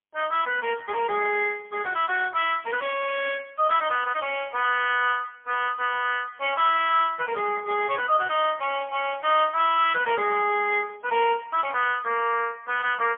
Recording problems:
phone line; 340 Hz to 3.2 kHz, AMR-NB, then MP3

